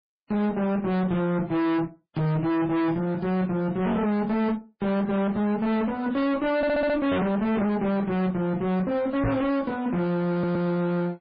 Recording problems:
codec artefacts; MP3, then MP3, log-spectral distance 2 dB, nothing above 4.4 kHz
distorted audio; hard clipping, signal-to-distortion ratio 6 dB
stutter; at 6.5 s and at 10 s
knock on the microphone; at 9 s; peak +4 dB vs average level

